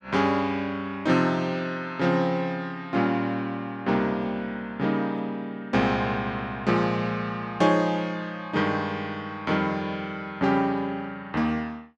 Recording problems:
none

